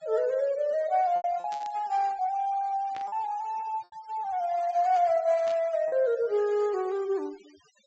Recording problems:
treble cut off; nothing above 7.8 kHz
denoising artefacts; signal-to-artefact ratio 24 dB
lost packets; 4% of the sound replaced, filled with repeated pitch periods
burst of static; at 1.5 s, at 3 s and at 5.5 s; peak -13 dB vs average level

